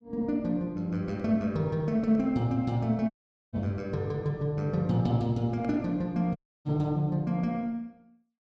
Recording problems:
audio cutting out; at 3 s and at 6.5 s

